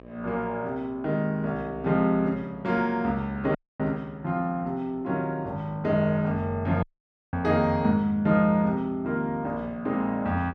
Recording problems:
hum; 60 Hz, harmonics up to 1.3 kHz, SNR 24 dB
dropout; at 3.5 s and at 7 s for 0.5 s

